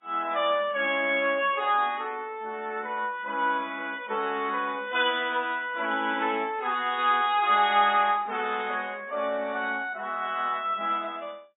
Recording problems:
lossy compression; AAC, then MP3, log-spectral distance 3 dB, nothing above 3.6 kHz

